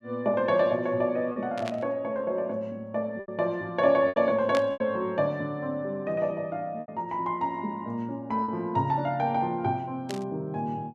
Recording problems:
packet loss; 4% of the sound replaced, filled with repeated pitch periods
static burst; at 1.5 s, at 4.5 s and at 10 s; peak -4 dB vs average level

